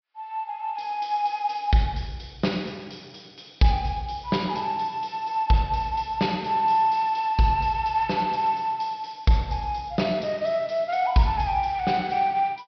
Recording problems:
treble missing; nothing above 5.5 kHz

